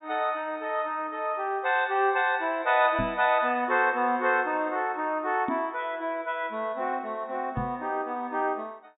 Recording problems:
low-pass filter; nothing above 4 kHz
knock on the microphone; at 3 s, at 5.5 s and at 7.5 s; peak -1 dB vs average level

